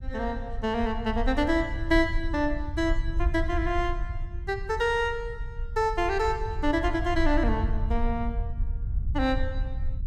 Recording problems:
rumble; below 66 Hz, SNR 5 dB

